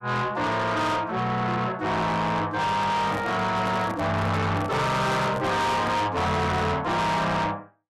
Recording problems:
distorted audio; soft clipping, signal-to-distortion ratio 6 dB
microphone handling noise; from 2.5 to 6 s; peak -4 dB vs average level

